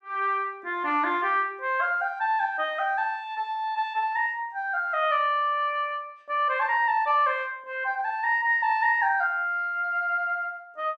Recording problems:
none

